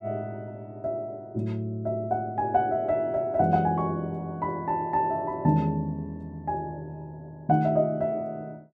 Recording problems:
none

